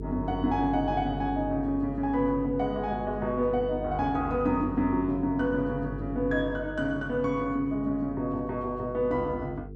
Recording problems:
hum; 50 Hz, harmonics up to 450 Hz, SNR 10 dB

